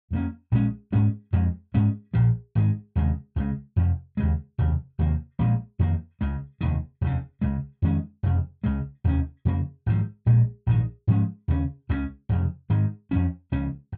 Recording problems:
none

